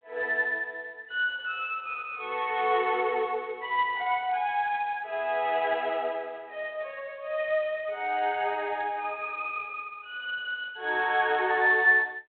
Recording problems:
telephone audio; 320 Hz to 3.3 kHz, G.726

